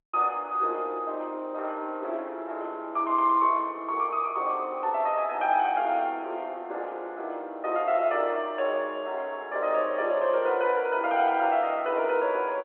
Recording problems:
telephone audio; 320 Hz to 3.4 kHz, G.711

